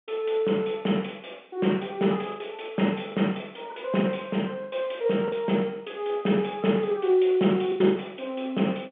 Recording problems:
telephone audio; 130 Hz to 3.5 kHz, G.711
lost packets; 6% of the sound replaced, filled with the last packet

